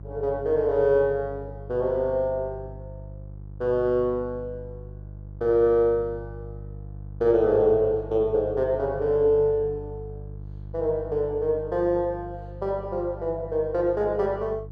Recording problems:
hum; 50 Hz, harmonics up to 350 Hz, SNR 15 dB

